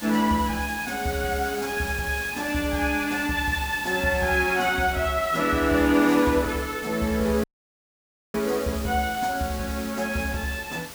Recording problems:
hiss; slope -1 dB per octave, SNR 13 dB
dropout; at 7.5 s for 1 s

